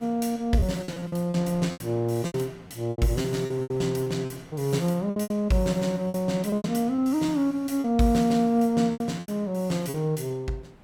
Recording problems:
wind on the microphone; below 860 Hz, SNR 26 dB
packet loss; 12% of the sound replaced, filled with repeated pitch periods

